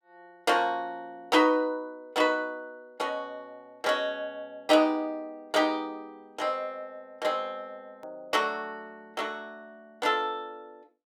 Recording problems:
hard cut with a click; at 8 s

